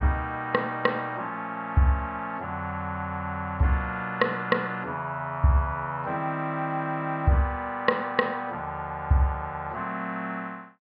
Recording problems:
treble missing; nothing above 5.1 kHz

